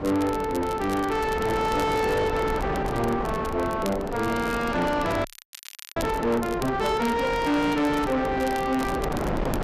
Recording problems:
distortion; soft clipping, signal-to-distortion ratio 8 dB
wind on the microphone; below 820 Hz, SNR 6 dB
crackle; vinyl, SNR 18 dB
frozen audio; at 5.5 s for 0.5 s

